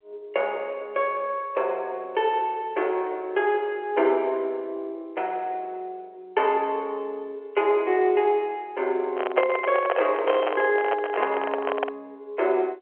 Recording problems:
phone line; 320 Hz to 3.3 kHz, G.711
microphone handling noise; from 9 to 12 s; peak +6 dB vs average level

